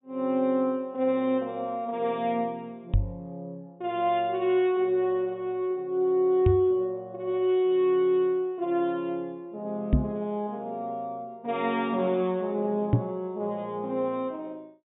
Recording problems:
low-pass filter; nothing above 4 kHz
knock on the microphone; 4 times, first at 3 s; peak +9 dB vs average level

